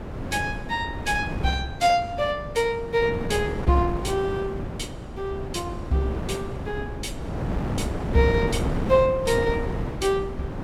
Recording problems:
wind noise; below 400 Hz, SNR 6 dB

